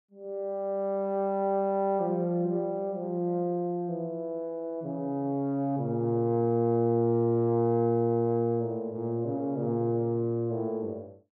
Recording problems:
none

